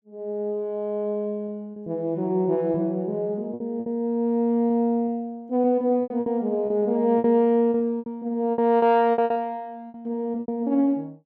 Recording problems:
lost packets; 10% of the sound replaced, filled with repeated pitch periods

